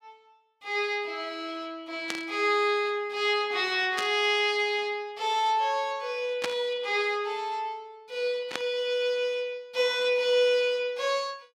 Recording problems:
static burst; 4 times, first at 2 s; peak +1 dB vs average level

